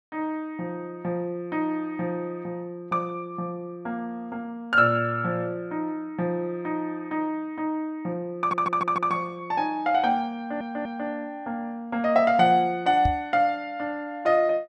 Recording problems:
stutter; at 8.5 s and at 10 s
microphone bump; at 13 s; peak +3 dB vs average level

